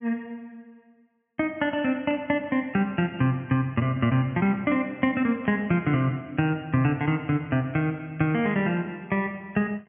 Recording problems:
treble missing; nothing above 3 kHz
static burst; at 2 s, at 5.5 s and at 8.5 s; peak -13 dB vs average level

